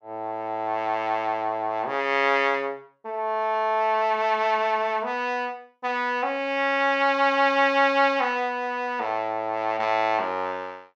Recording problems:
none

